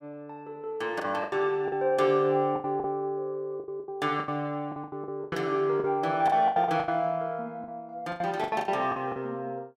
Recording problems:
packet loss; 14% of the sound replaced, filled with the last packet

